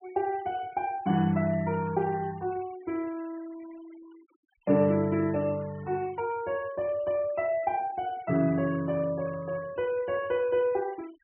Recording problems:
treble missing; nothing above 3.1 kHz
noise reduction artefacts; signal-to-artefact ratio 24 dB

